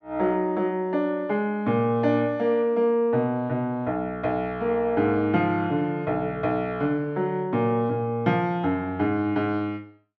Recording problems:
none

